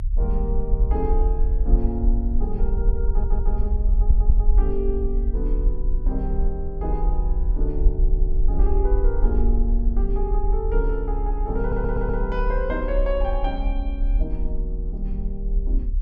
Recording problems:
rumble; below 46 Hz, strongest tone 36 Hz, SNR -5 dB
audio stuttering; 4 times, first at 3 s

